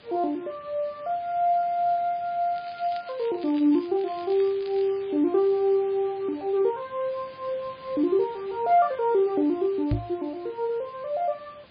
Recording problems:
codec artefacts; MP3, log-spectral distance 7 dB
hiss; SNR 24 dB
crackling; from 2.5 to 5 s; loose cable, SNR 22 dB
knock on the microphone; at 10 s; peak +3 dB vs average level

